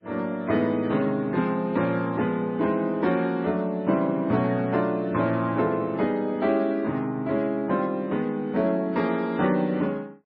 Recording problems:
lossy codec; MP3, log-spectral distance 2 dB, nothing above 4.6 kHz

